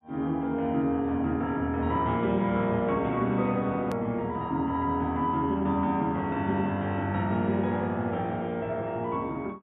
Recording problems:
treble cut off; nothing above 4 kHz
hard cut with a click; at 4 s

